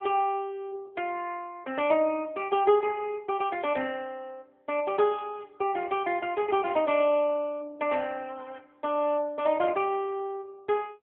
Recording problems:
phone line; 150 Hz to 3.4 kHz, AMR-NB

